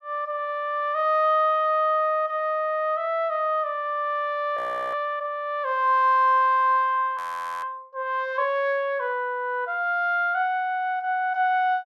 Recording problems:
frozen audio; at 4.5 s and at 7 s

